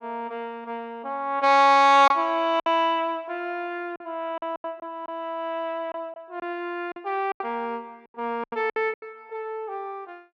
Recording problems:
packet loss; 7% of the sound replaced, filled with silence

